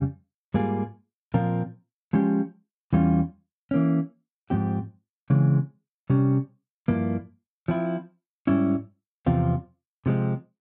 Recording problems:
none

